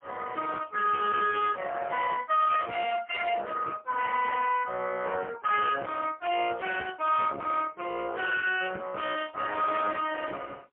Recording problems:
telephone audio; 260 Hz to 2.9 kHz, AMR-NB, then MP3
distortion; hard clipping, uneven, signal-to-distortion ratio 8 dB

